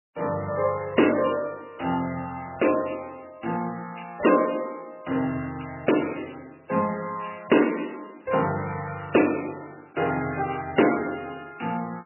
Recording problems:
codec artefacts; MP3, log-spectral distance 9 dB, nothing above 2.9 kHz

